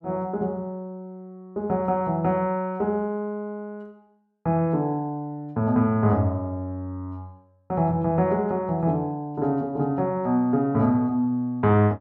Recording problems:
none

